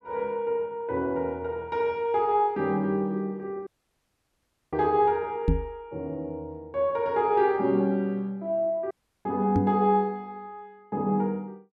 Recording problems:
dropout; at 3.5 s for 1 s and at 9 s
knock on the microphone; at 5.5 s and at 9.5 s; peak +6 dB vs average level

